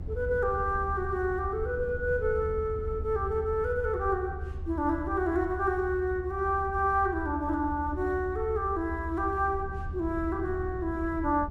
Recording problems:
low-frequency rumble; below 80 Hz, SNR 8 dB

